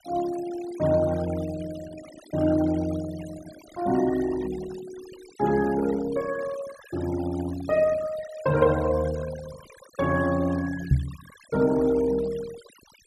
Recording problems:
noise reduction artefacts; signal-to-artefact ratio 16 dB
microphone bump; at 11 s; peak +9 dB vs average level

